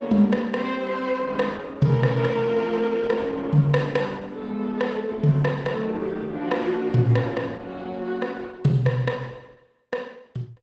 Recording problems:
codec artefacts; Opus, log-spectral distance 3 dB, nothing above 8 kHz

